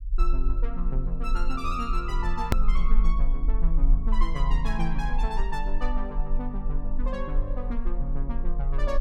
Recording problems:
rumble; below 38 Hz, strongest tone 24 Hz, SNR -4 dB
click at an edit; at 2.5 s

